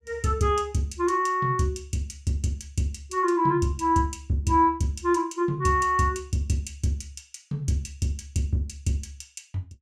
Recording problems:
none

